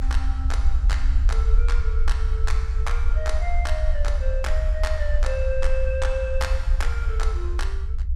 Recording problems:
low-frequency rumble; below 60 Hz, SNR -7 dB

